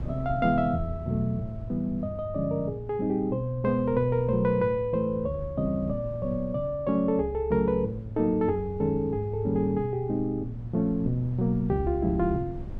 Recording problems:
wind noise; below 140 Hz, SNR 15 dB

